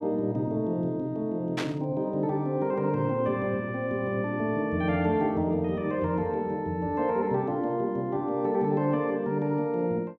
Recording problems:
static burst; at 1.5 s; peak -1 dB vs average level

